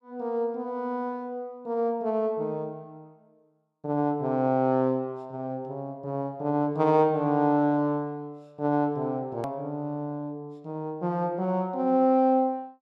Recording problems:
hard cut with a click; at 9.5 s

